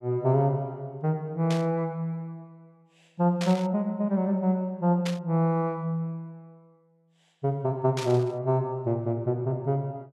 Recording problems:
static burst; 4 times, first at 1.5 s; peak -4 dB vs average level

